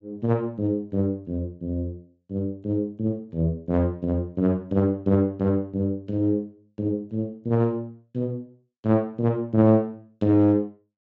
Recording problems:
treble cut off; nothing above 8 kHz

